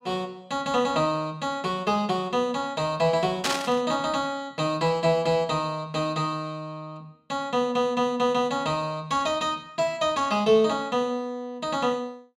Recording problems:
static burst; at 3.5 s; peak +4 dB vs average level

